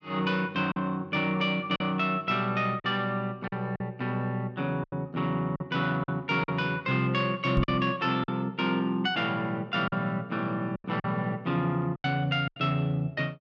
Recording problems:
packet loss; 6% of the sound replaced, filled with silence
microphone thump; at 7.5 s; peak +2 dB vs average level

